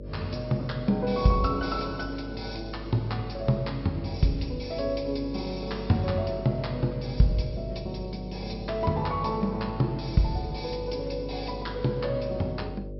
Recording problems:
treble missing; nothing above 5.4 kHz
hum; 50 Hz, harmonics up to 600 Hz, SNR 10 dB

